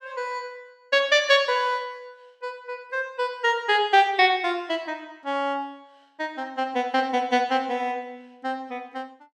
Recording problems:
none

